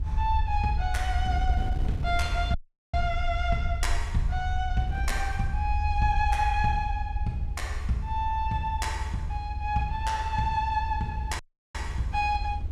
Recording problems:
low-frequency rumble; below 80 Hz, SNR 2 dB
wind on the microphone; below 110 Hz, SNR 12 dB
audio cutting out; at 2.5 s and at 11 s

